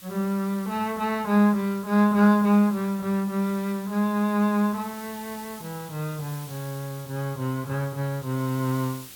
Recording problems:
background hiss; SNR 19 dB

